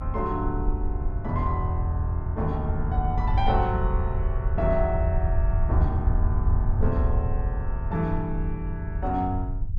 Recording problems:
low-frequency rumble; below 84 Hz, SNR -1 dB

